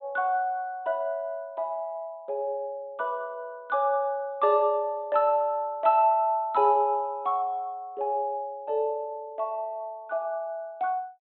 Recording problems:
treble missing; nothing above 4 kHz

